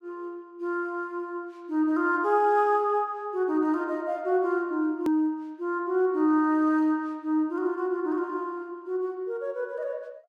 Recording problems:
edit click; at 5 s

